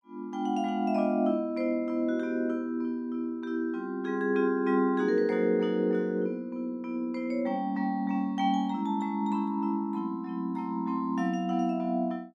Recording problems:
none

